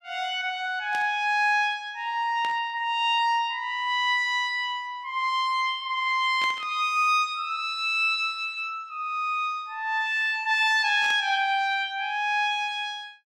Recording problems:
burst of static; 4 times, first at 1 s; peak -9 dB vs average level

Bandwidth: 15.5 kHz